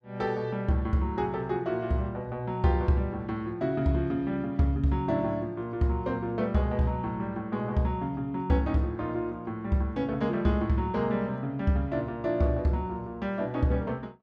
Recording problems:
none

